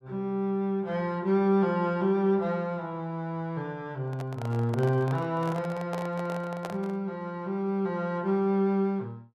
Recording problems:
handling noise; from 4 to 7 s; peak -4 dB vs average level

